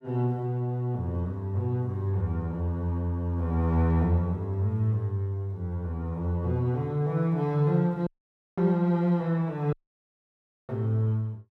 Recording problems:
dropout; at 8 s for 0.5 s and at 9.5 s for 1 s

